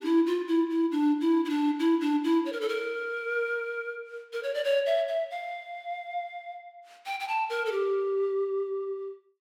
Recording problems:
none

